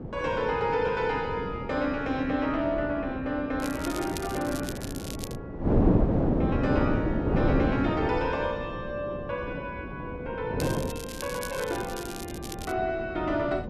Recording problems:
wind noise; below 410 Hz, SNR 1 dB
crackling; from 3.5 to 5.5 s and from 11 to 13 s; loose cable, SNR 11 dB

